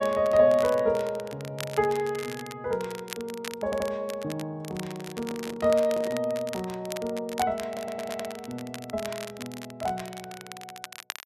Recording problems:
crackling; vinyl, SNR 13 dB
audio stuttering; at 3.5 s and at 7.5 s
microphone handling noise; from 4.5 to 6 s; peak -7 dB vs average level

